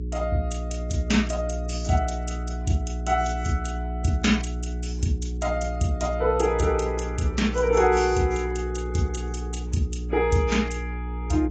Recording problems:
lossy codec; AAC, log-spectral distance 2 dB, nothing above 7.8 kHz
hum; 60 Hz, harmonics up to 420 Hz, SNR 6 dB

